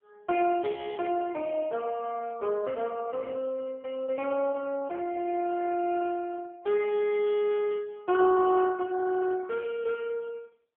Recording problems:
telephone audio; 300 Hz to 2.8 kHz, AMR-NB

